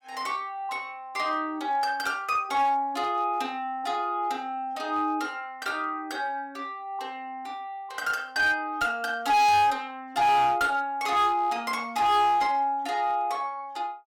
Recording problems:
distorted audio; hard clipping, uneven, signal-to-distortion ratio 7 dB

